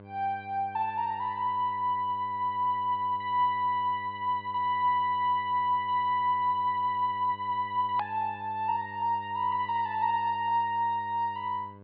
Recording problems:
treble cut off; nothing above 4.8 kHz
hum; 50 Hz, harmonics up to 1.6 kHz, SNR 21 dB
click at an edit; at 8 s

